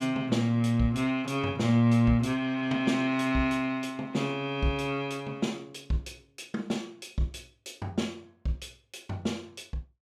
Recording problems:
none

